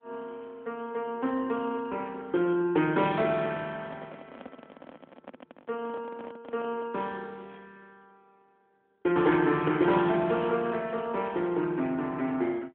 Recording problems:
telephone audio; 170 Hz to 3.6 kHz, AMR-NB
handling noise; from 3.5 to 7 s; peak -10 dB vs average level

